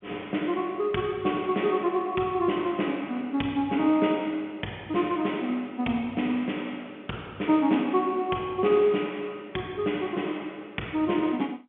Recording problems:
phone line; 150 Hz to 3.5 kHz, G.711

